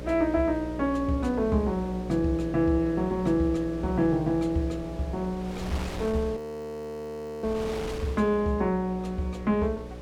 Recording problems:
hum; 60 Hz, harmonics up to 600 Hz, SNR 12 dB
wind noise; below 1.6 kHz, SNR 16 dB
audio freezing; at 6.5 s for 1 s

